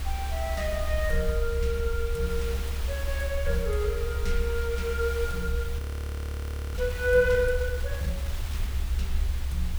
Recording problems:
background hiss; slope -2 dB per octave, SNR 11 dB
low-frequency rumble; below 70 Hz, SNR 2 dB
audio freezing; at 6 s for 1 s

